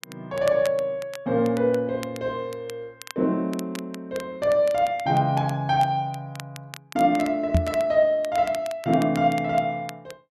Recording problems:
crackling; vinyl, SNR 20 dB
microphone thump; at 7.5 s; peak +6 dB vs average level

